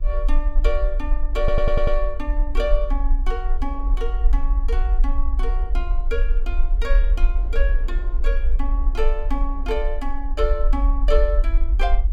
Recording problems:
rumble; below 42 Hz, SNR -5 dB
wind noise; below 600 Hz, SNR 21 dB
audio stuttering; at 1.5 s

